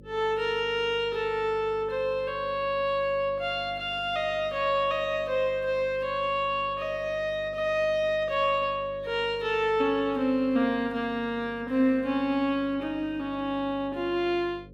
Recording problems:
mains hum; 50 Hz, harmonics up to 550 Hz, SNR 21 dB

